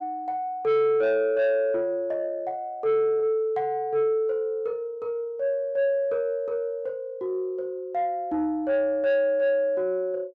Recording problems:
distortion; soft clipping, signal-to-distortion ratio 10 dB

